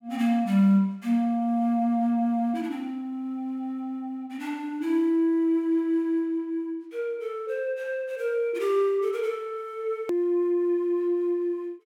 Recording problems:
click at an edit; at 10 s

